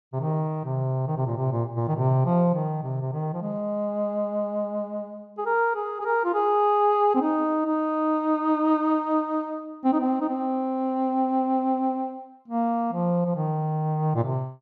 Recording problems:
none

